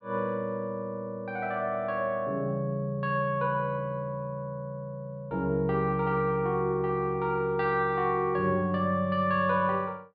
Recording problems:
treble missing; nothing above 5.2 kHz

